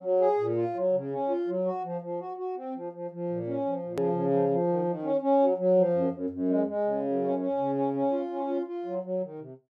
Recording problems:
edit click; at 4 s

